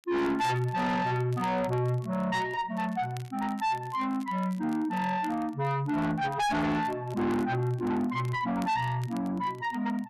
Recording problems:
distorted audio; soft clipping, signal-to-distortion ratio 7 dB
crackle; vinyl, SNR 25 dB

